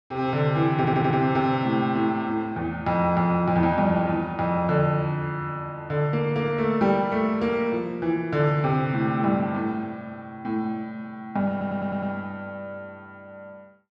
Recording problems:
stutter; at 1 s and at 12 s

